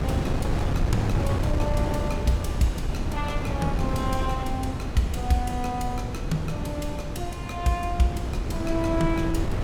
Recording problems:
wind on the microphone; below 240 Hz, SNR 0 dB

